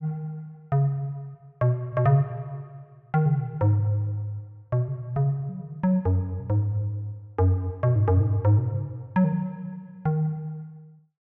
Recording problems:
none

